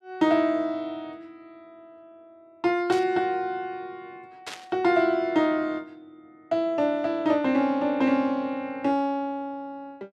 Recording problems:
static burst; at 3 s and at 4.5 s; peak -6 dB vs average level

